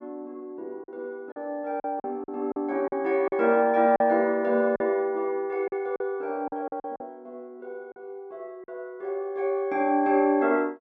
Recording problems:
lost packets; 7% of the sound replaced, filled with silence

